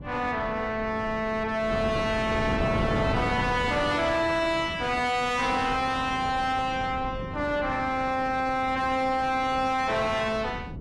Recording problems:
lossy compression; AAC, log-spectral distance 3 dB, nothing above 11.3 kHz
distortion; soft clipping, signal-to-distortion ratio 6 dB
wind noise; below 420 Hz, SNR 8 dB

